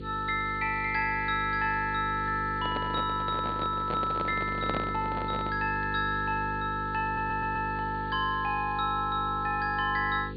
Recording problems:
treble missing; nothing above 4.6 kHz
hum; 50 Hz, harmonics up to 500 Hz, SNR 10 dB
hiss; SNR 27 dB
microphone handling noise; from 2.5 to 5.5 s; peak 0 dB vs average level
stutter; at 7 s

